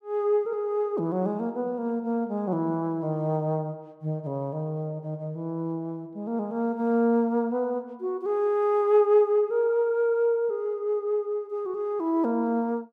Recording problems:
none

